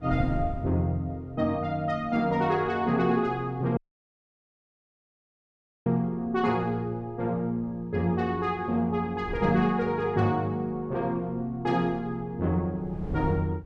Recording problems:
wind on the microphone; below 180 Hz, SNR 15 dB
audio cutting out; at 4 s for 2 s

